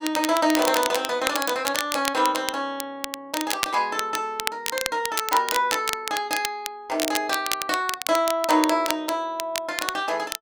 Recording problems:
crackling; vinyl, SNR 5 dB

